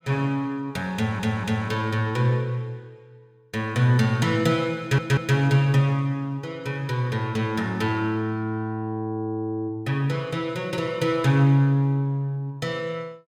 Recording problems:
audio stuttering; at 1 s and at 5 s

